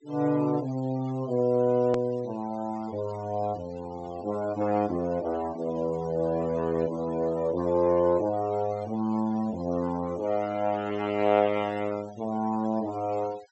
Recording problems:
treble cut off; nothing above 7.8 kHz
noise reduction artefacts; signal-to-artefact ratio 21 dB
click at an edit; at 2 s

